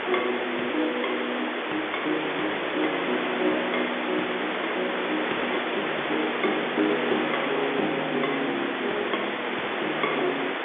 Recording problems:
phone line; 260 Hz to 3.7 kHz, G.711
hiss; SNR -1 dB

